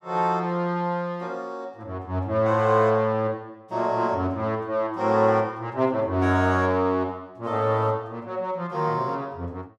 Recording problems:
none

